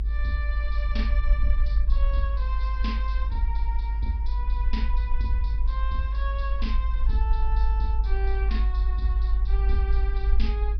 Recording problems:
low-pass filter; nothing above 5.5 kHz
hum; 60 Hz, harmonics up to 900 Hz, SNR 20 dB
low-frequency rumble; below 52 Hz, strongest tone 52 Hz, SNR -9 dB

